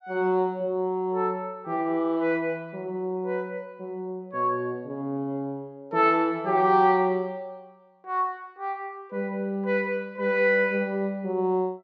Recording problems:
treble cut off; nothing above 8 kHz

